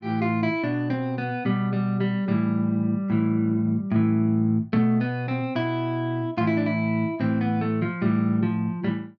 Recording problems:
none

